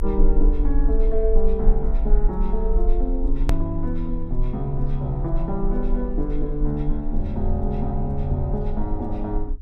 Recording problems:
rumble; below 38 Hz, strongest tone 24 Hz, SNR 0 dB
hard cut with a click; at 3.5 s

